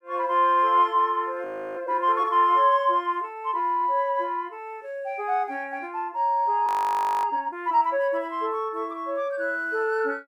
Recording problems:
audio freezing; at 1.5 s and at 6.5 s for 0.5 s

